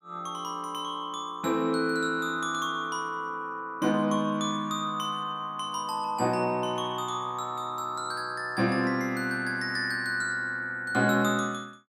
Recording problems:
none

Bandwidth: 15.5 kHz